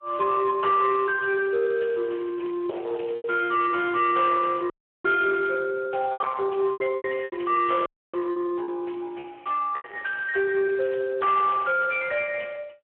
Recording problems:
phone line; 370 Hz to 3.2 kHz, Speex
distorted audio; soft clipping, signal-to-distortion ratio 10 dB
lost packets; 5% of the sound replaced, filled with repeated pitch periods
crackle; from 1.5 to 3 s and from 3.5 to 5 s; loose cable, SNR 27 dB
dropout; at 4.5 s and at 8 s

